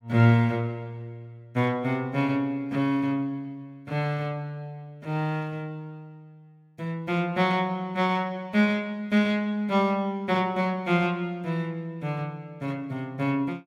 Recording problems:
none

